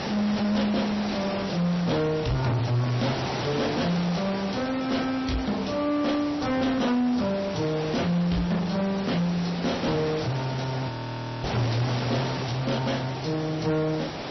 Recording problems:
codec artefacts; MP3, log-spectral distance 8 dB, nothing above 5.8 kHz
distorted audio; soft clipping, signal-to-distortion ratio 11 dB
hiss; slope -5 dB per octave, SNR 6 dB
audio freezing; at 11 s for 0.5 s

